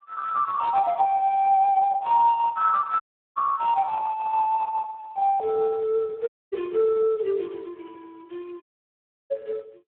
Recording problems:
telephone audio; 340 Hz to 2.6 kHz, Speex
audio cutting out; at 3 s, at 6.5 s and at 8.5 s for 0.5 s

